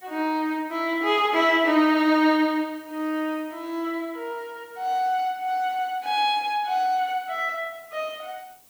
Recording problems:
background hiss; SNR 28 dB

